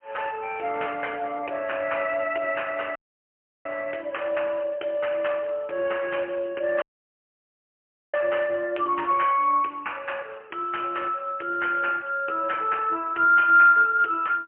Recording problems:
phone line; 300 Hz to 3.1 kHz, AMR-NB, then MP3
dropout; at 3 s for 0.5 s and at 7 s for 1.5 s

